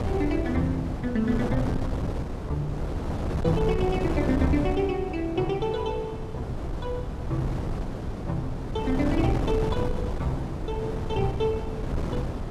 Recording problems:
wind noise; below 340 Hz, SNR 2 dB

